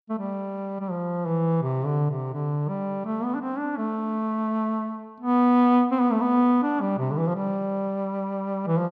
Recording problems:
none

